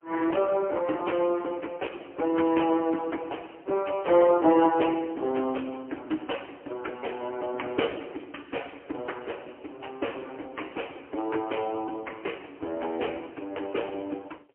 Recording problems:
phone line; 260 Hz to 3.1 kHz, AMR-NB, then MP3

